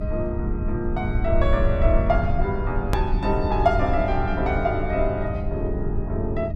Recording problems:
electrical hum; 50 Hz, harmonics up to 700 Hz, SNR 10 dB
low-frequency rumble; below 84 Hz, SNR 2 dB
click at an edit; at 3 s

